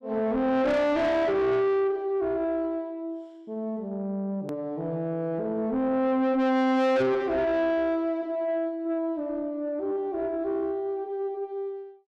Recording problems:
distorted audio; soft clipping, signal-to-distortion ratio 8 dB
hard cut with a click; at 4.5 s

